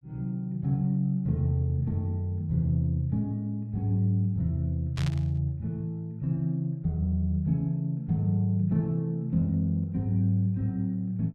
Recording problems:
burst of static; at 5 s; peak -7 dB vs average level

